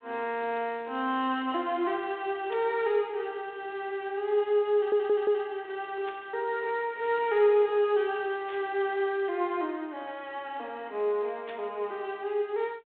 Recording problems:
telephone audio; 300 Hz to 3.7 kHz, G.726
burst of static; 4 times, first at 2.5 s; peak -11 dB vs average level
stutter; at 5 s

